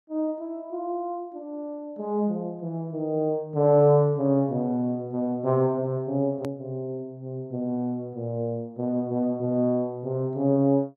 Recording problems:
hard cut with a click; at 6.5 s

